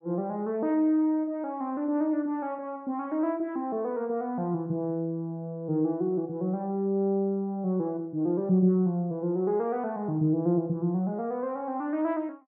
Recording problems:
none

